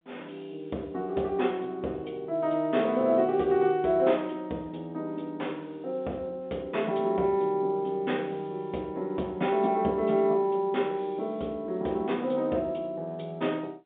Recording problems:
phone line; 220 Hz to 3.8 kHz, G.711

